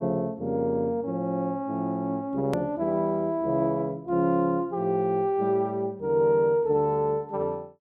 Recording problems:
edit click; at 2.5 s

